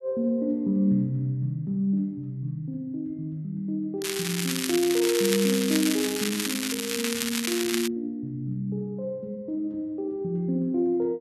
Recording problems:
crackle; from 4 to 8 s; loose cable, SNR 2 dB

